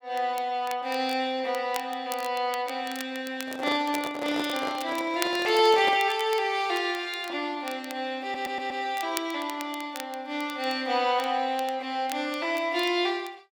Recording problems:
crackle; vinyl, SNR 16 dB
handling noise; from 3.5 to 6 s; peak -2 dB vs average level
audio stuttering; at 8 s

